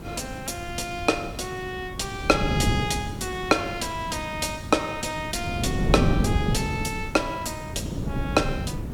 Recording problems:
hum; 50 Hz, harmonics up to 550 Hz, SNR 20 dB
background hiss; slope -5 dB per octave, SNR 21 dB
wind noise; below 250 Hz, SNR 3 dB

